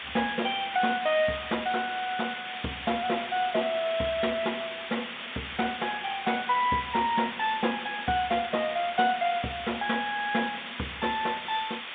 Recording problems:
telephone audio; 150 Hz to 3.7 kHz, G.711
hiss; SNR 7 dB

